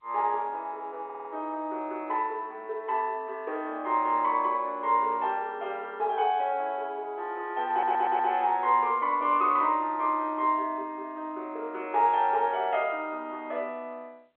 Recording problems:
telephone audio; 340 Hz to 3.6 kHz, G.711
audio stuttering; at 1 s and at 7.5 s

